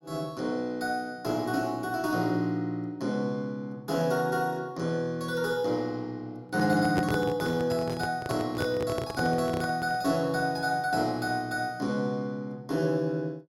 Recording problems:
handling noise; from 6.5 to 10 s; peak +3 dB vs average level

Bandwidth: 16 kHz